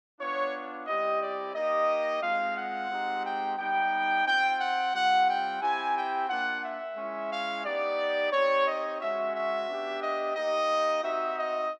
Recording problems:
none

